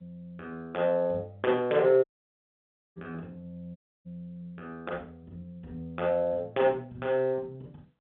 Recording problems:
telephone audio; 190 Hz to 3.7 kHz, G.711
audio cutting out; at 2 s for 1 s and at 4 s

